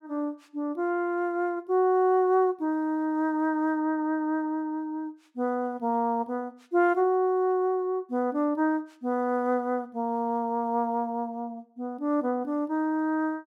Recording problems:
none

